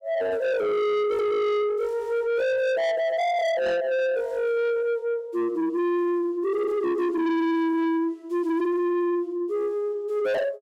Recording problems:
distorted audio; soft clipping, signal-to-distortion ratio 7 dB

